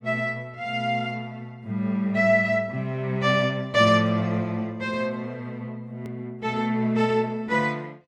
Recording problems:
click at an edit; at 6 s

